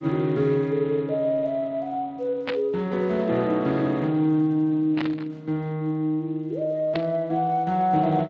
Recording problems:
lossy codec; G.722, then Speex, log-spectral distance 2 dB
static burst; at 2.5 s, at 5 s and at 7 s; peak -2 dB vs average level

